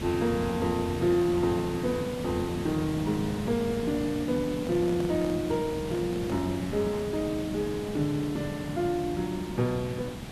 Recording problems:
background hiss; slope -5 dB per octave, SNR 7 dB
microphone handling noise; from 4.5 to 6.5 s; peak -7 dB vs average level

